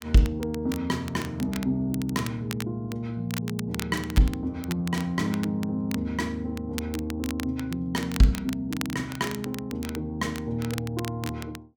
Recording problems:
crackling; vinyl, SNR 12 dB

